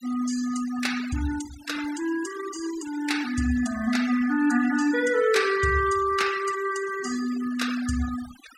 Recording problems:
noise reduction artefacts; signal-to-artefact ratio 14 dB

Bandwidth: 16 kHz